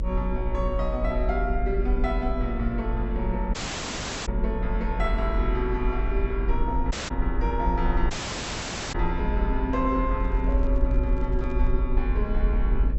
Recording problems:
treble cut off; nothing above 7.9 kHz
hum; 60 Hz, harmonics up to 600 Hz, SNR 8 dB
rumble; below 48 Hz, strongest tone 46 Hz, SNR -1 dB
audio cutting out; at 3.5 s for 0.5 s, at 7 s and at 8 s for 1 s
handling noise; from 10 to 12 s; peak -10 dB vs average level

